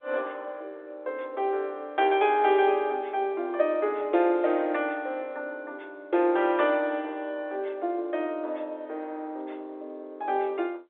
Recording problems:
telephone audio; 300 Hz to 4 kHz, G.711

